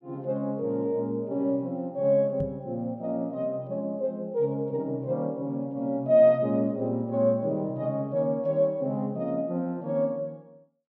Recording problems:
knock on the microphone; at 2.5 s; peak -2 dB vs average level

